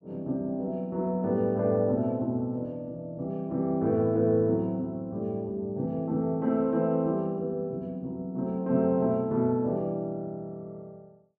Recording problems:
none

